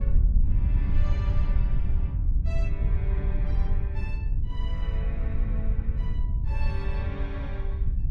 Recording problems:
wind noise; below 72 Hz, SNR -13 dB

